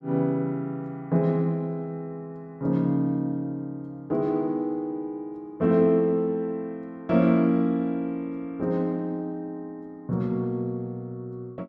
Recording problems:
none

